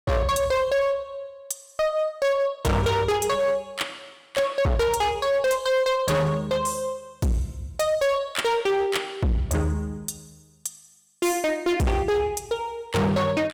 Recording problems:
distortion; hard clipping, signal-to-distortion ratio 6 dB

